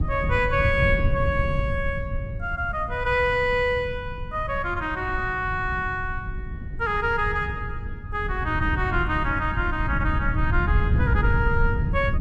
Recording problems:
low-frequency rumble; below 100 Hz, SNR 5 dB
wind noise; below 140 Hz, SNR 7 dB

